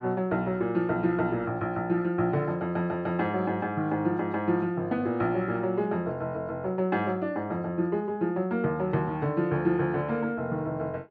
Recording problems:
none

